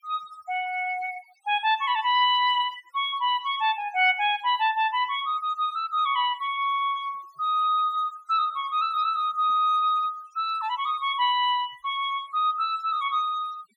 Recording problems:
denoising artefacts; signal-to-artefact ratio 22 dB

